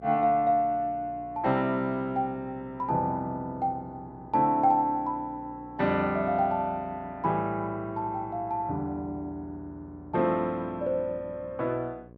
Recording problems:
electrical hum; 60 Hz, harmonics up to 1.1 kHz, SNR 21 dB

